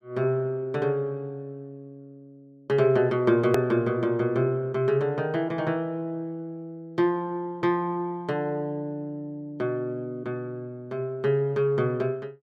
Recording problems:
click at an edit; at 3.5 s

